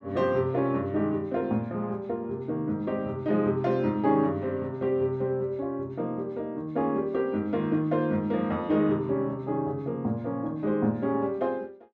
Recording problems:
none

